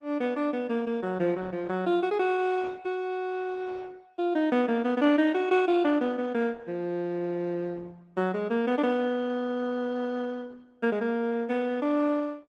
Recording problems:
lossy codec; Opus, log-spectral distance 2 dB, nothing above 10.1 kHz

